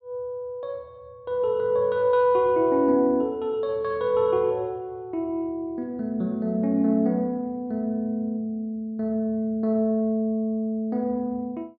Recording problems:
none

